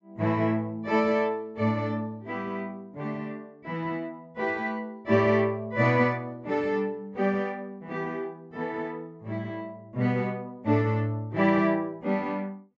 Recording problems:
treble missing; nothing above 8 kHz

